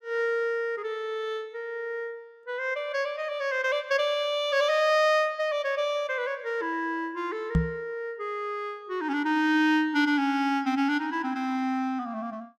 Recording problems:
microphone bump; at 7.5 s; peak +7 dB vs average level

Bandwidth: 14.5 kHz